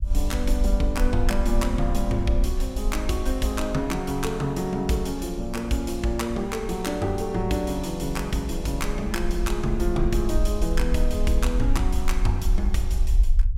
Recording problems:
rumble; below 52 Hz, strongest tone 24 Hz, SNR 2 dB

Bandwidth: 16 kHz